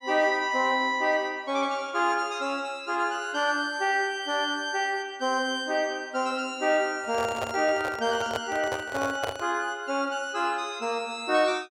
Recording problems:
microphone handling noise; from 7 to 9.5 s; peak 0 dB vs average level

